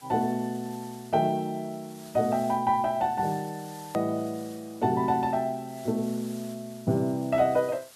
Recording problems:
hiss; slope 0 dB per octave, SNR 21 dB
click at an edit; at 4 s

